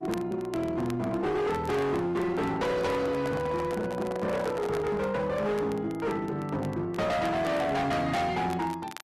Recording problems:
codec artefacts; Opus, log-spectral distance 2 dB, nothing above 13.1 kHz
distorted audio; hard clipping, signal-to-distortion ratio 7 dB
crackle; vinyl, SNR 22 dB
microphone handling noise; from 3 to 5 s; peak -4 dB vs average level

